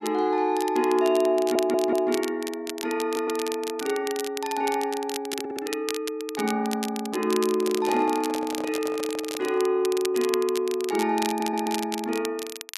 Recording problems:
crackling; vinyl, SNR 11 dB
stutter; 4 times, first at 1.5 s
microphone handling noise; from 7.5 to 9.5 s; peak -6 dB vs average level

